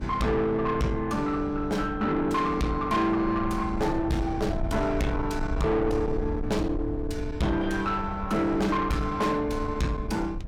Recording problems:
distortion; soft clipping, signal-to-distortion ratio 7 dB
low-frequency rumble; below 150 Hz, SNR 9 dB

